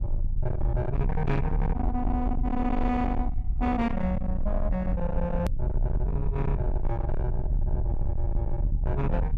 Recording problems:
distorted audio; soft clipping, signal-to-distortion ratio 8 dB
rumble; below 72 Hz, SNR 0 dB
edit click; at 5.5 s

